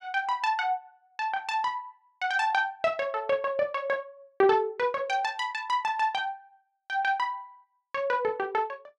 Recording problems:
none

